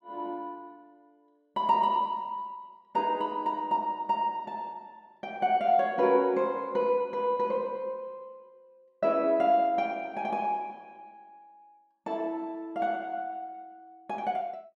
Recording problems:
none

